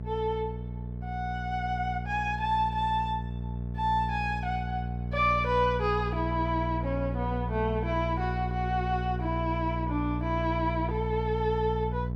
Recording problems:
hum; 60 Hz, harmonics up to 660 Hz, SNR 4 dB

